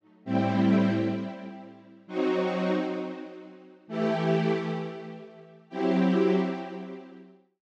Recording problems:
none

